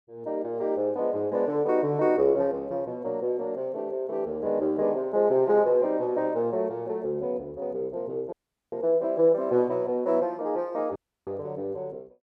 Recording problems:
audio cutting out; at 8.5 s and at 11 s

